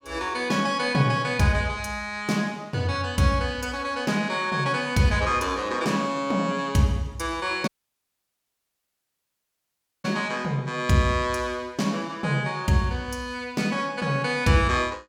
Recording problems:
dropout; at 7.5 s for 2.5 s

